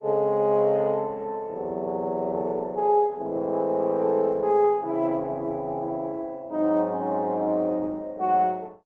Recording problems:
codec artefacts; Opus, log-spectral distance 2 dB

